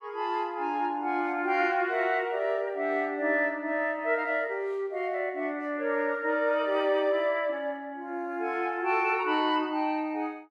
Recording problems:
none

